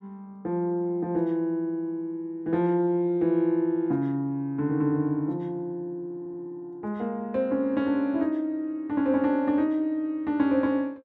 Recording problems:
stutter; at 6 s

